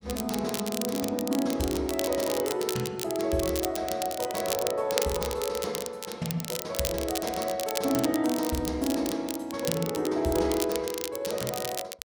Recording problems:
crackle; vinyl, SNR 6 dB

